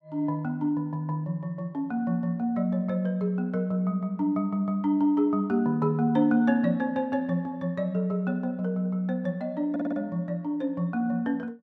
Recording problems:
stutter; at 9.5 s

